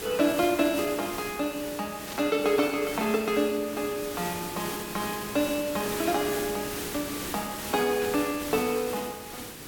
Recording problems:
hiss; SNR 7 dB
static burst; at 2 s, at 6 s and at 8 s; peak -7 dB vs average level

